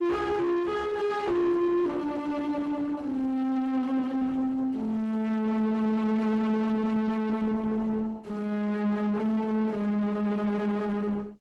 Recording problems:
lossy codec; Opus, log-spectral distance 2 dB
distorted audio; soft clipping, signal-to-distortion ratio 6 dB

